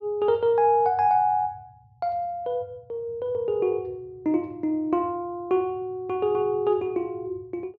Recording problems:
treble missing; nothing above 7.9 kHz

